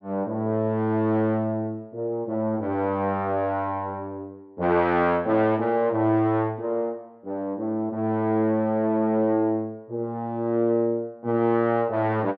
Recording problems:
none

